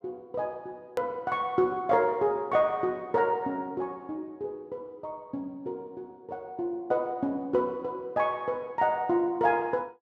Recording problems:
edit click; at 1 s

